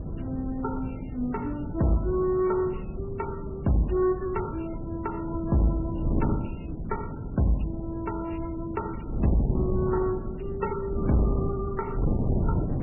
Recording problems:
codec artefacts; MP3, log-spectral distance 4 dB, nothing above 2.8 kHz
distorted audio; soft clipping, signal-to-distortion ratio 12 dB
wind on the microphone; below 230 Hz, SNR 3 dB

